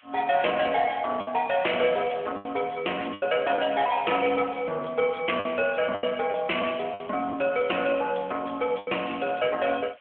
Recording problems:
telephone audio; 300 Hz to 3.3 kHz, AMR-NB
distorted audio; soft clipping, signal-to-distortion ratio 13 dB
background hiss; SNR 27 dB
lost packets; 6% of the sound replaced, filled with the last packet

